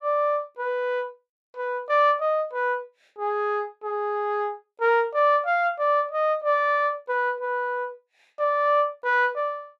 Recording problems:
none

